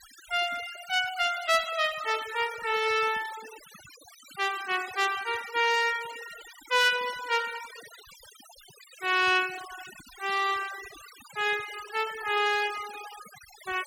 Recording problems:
denoising artefacts; signal-to-artefact ratio 15 dB

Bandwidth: 17.5 kHz